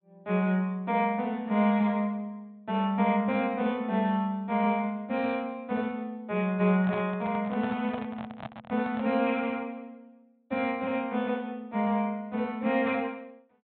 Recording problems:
treble cut off; nothing above 4 kHz
microphone handling noise; from 6.5 to 9 s; peak -5 dB vs average level

